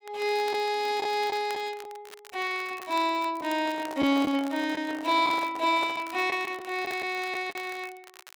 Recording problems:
crackling; vinyl, SNR 20 dB
packet loss; 4% of the sound replaced, filled with the last packet
microphone handling noise; from 3.5 to 6.5 s; peak -5 dB vs average level

